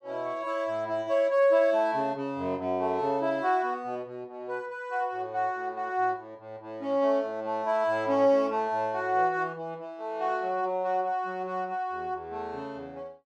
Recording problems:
none

